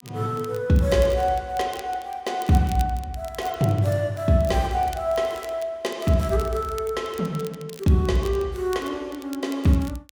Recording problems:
crackling; vinyl, SNR 21 dB

